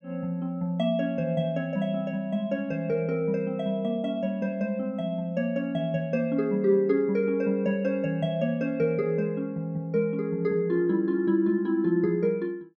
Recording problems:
none

